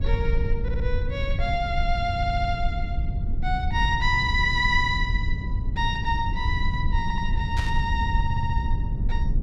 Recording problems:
low-frequency rumble; below 92 Hz, SNR 1 dB
stutter; 4 times, first at 0.5 s
static burst; at 7.5 s; peak -4 dB vs average level

